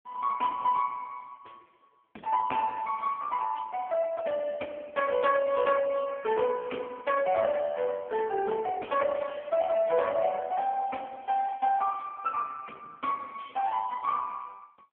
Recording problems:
telephone audio; 240 Hz to 2.4 kHz, AMR-NB

